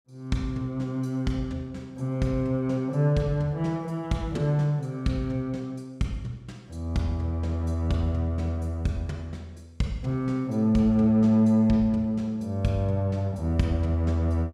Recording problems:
none

